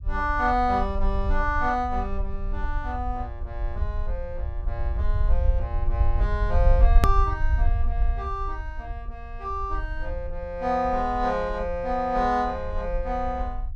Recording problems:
low-frequency rumble; below 62 Hz, SNR 1 dB
hard cut with a click; at 7 s

